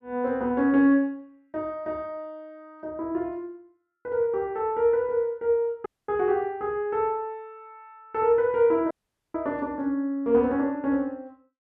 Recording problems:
dropout; at 6 s and at 9 s

